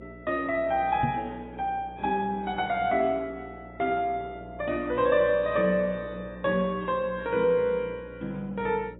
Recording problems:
lossy codec; AAC, log-spectral distance 2 dB, nothing above 3.2 kHz
hum; 60 Hz, harmonics up to 600 Hz, SNR 19 dB
knock on the microphone; at 1 s; peak +2 dB vs average level

